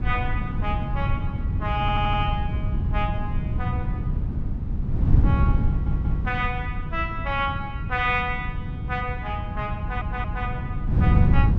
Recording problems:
wind noise; below 140 Hz, SNR -3 dB
audio stuttering; at 2 s, at 5.5 s and at 10 s

